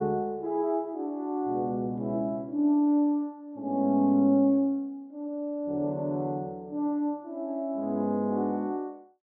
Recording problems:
low-pass filter; nothing above 5.5 kHz

